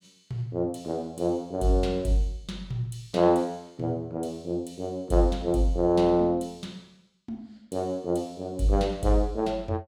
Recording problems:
none

